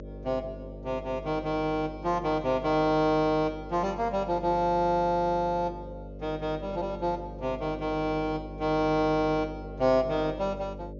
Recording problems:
treble cut off; nothing above 6.9 kHz
hum; 50 Hz, harmonics up to 600 Hz, SNR 14 dB

